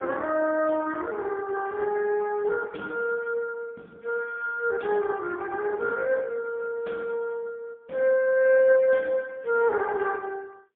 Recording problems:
telephone audio; 190 Hz to 2.6 kHz, AMR-NB, then MP3

